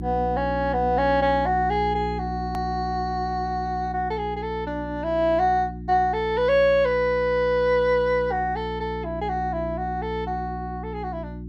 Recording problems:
hum; 60 Hz, harmonics up to 360 Hz, SNR 10 dB
hard cut with a click; at 2.5 s

